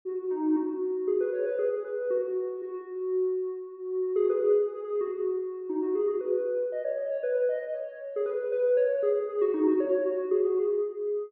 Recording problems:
none

